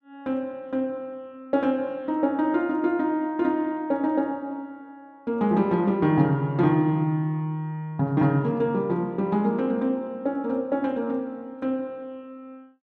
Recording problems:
none

